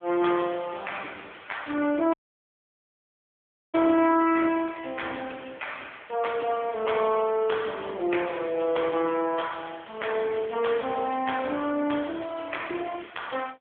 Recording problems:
telephone audio; 240 Hz to 3.4 kHz, AMR-NB
audio cutting out; at 2 s for 1.5 s

